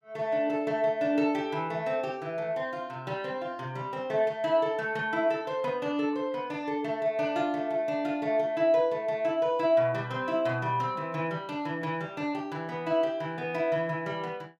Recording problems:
none

